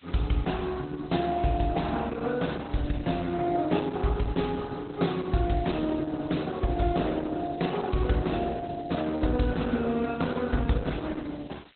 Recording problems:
lossy compression; Opus, log-spectral distance 10 dB, nothing above 4 kHz
hiss; SNR 27 dB

